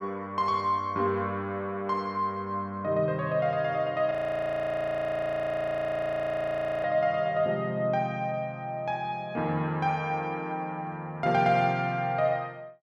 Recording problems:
frozen audio; at 4 s for 2.5 s

